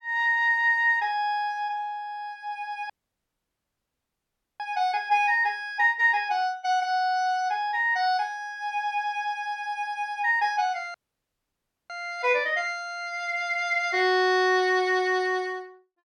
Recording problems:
audio cutting out; at 3 s for 1.5 s and at 11 s for 1 s

